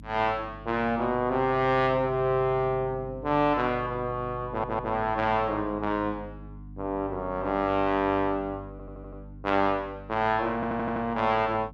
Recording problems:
electrical hum; 50 Hz, harmonics up to 300 Hz, SNR 17 dB
stutter; at 4.5 s, at 8.5 s and at 11 s

